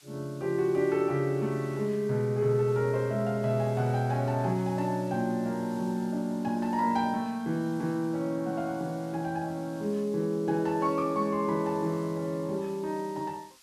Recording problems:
background hiss; slope +3 dB per octave, SNR 25 dB

